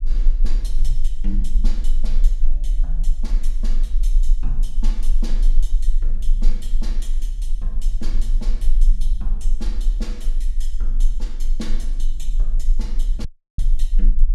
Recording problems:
low-frequency rumble; below 32 Hz, strongest tone 18 Hz, SNR -14 dB
audio cutting out; at 13 s

